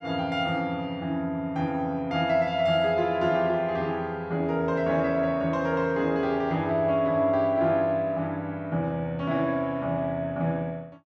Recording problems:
none

